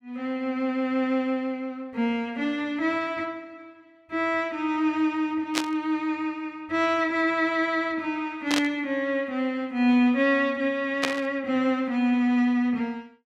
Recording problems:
static burst; at 5.5 s, at 8.5 s and at 11 s; peak +5 dB vs average level

